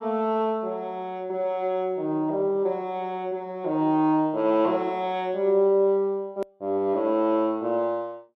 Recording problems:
click at an edit; at 6.5 s

